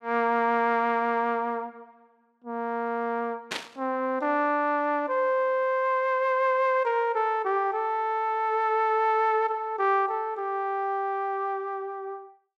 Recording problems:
static burst; at 3.5 s; peak -1 dB vs average level

